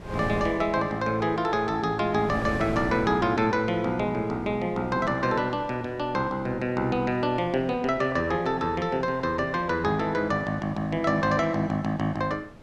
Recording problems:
wind noise; below 590 Hz, SNR 17 dB

